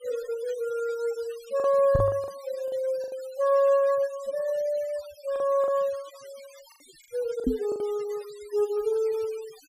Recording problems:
denoising artefacts; signal-to-artefact ratio 22 dB
lost packets; 5% of the sound replaced, filled with the last packet
microphone thump; at 2 s and at 7.5 s; peak +6 dB vs average level

